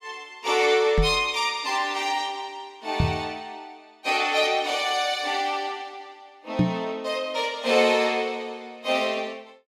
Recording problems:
microphone thump; at 1 s, at 3 s and at 6.5 s; peak +7 dB vs average level

